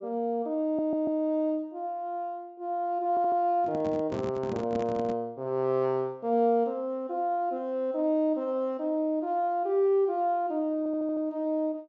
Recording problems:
low-pass filter; nothing above 8 kHz
audio stuttering; at 0.5 s, at 3 s and at 11 s
handling noise; from 3.5 to 5 s; peak -4 dB vs average level

